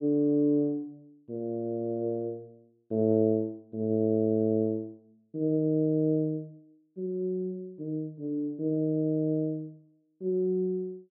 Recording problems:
none

